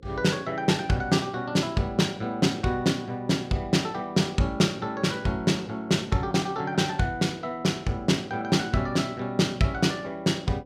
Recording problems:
hum; 60 Hz, harmonics up to 540 Hz, SNR 28 dB

